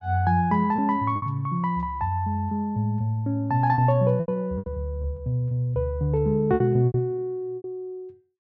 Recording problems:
lost packets; 7% of the sound replaced, filled with repeated pitch periods

